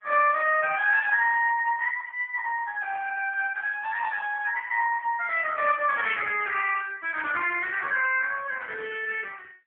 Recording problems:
phone line; 320 Hz to 3.2 kHz, AMR-NB

